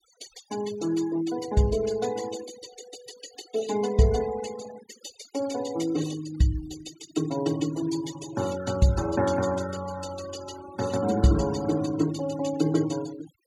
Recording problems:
denoising artefacts; signal-to-artefact ratio 16 dB

